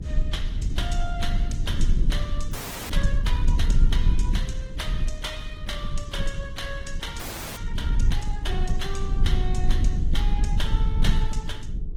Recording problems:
codec artefacts; Opus, log-spectral distance 3 dB
hum; 60 Hz, harmonics up to 420 Hz, SNR 18 dB
rumble; below 50 Hz, strongest tone 22 Hz, SNR -7 dB
audio freezing; at 2.5 s and at 7 s

